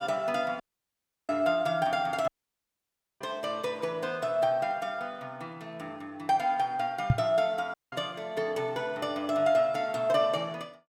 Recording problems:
audio cutting out; at 0.5 s for 0.5 s, at 2.5 s for 1 s and at 7.5 s
microphone bump; at 7 s; peak +9 dB vs average level

